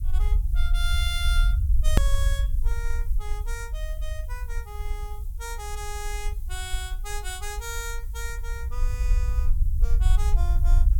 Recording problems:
hiss; slope +3 dB per octave, SNR 18 dB
rumble; below 56 Hz, SNR -8 dB
hard cut with a click; at 2 s

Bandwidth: 17.5 kHz